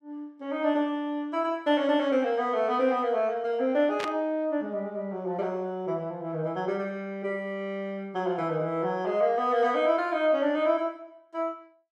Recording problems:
static burst; at 4 s; peak -2 dB vs average level

